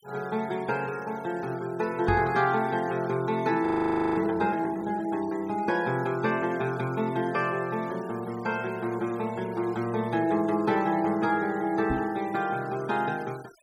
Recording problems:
denoising artefacts; signal-to-artefact ratio 21 dB
microphone thump; at 2 s and at 12 s; peak +1 dB vs average level
audio freezing; at 3.5 s for 0.5 s

